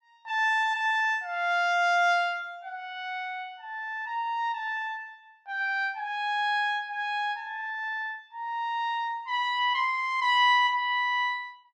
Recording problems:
none

